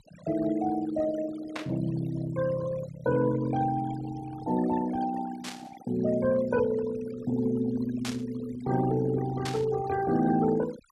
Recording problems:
denoising artefacts; signal-to-artefact ratio 14 dB
burst of static; 4 times, first at 1.5 s; peak -3 dB vs average level

